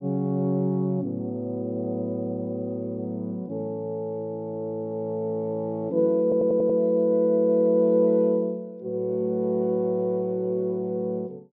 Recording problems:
low-pass filter; nothing above 5.5 kHz
stutter; at 6 s

